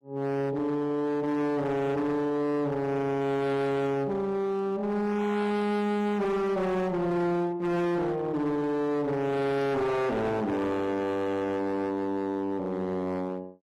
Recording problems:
lossy codec; AAC, log-spectral distance 2 dB, nothing above 13.1 kHz
distorted audio; hard clipping, uneven, signal-to-distortion ratio 7 dB

